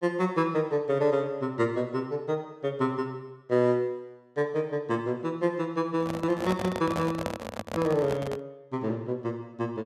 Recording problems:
microphone handling noise; from 6 to 8.5 s; peak +1 dB vs average level

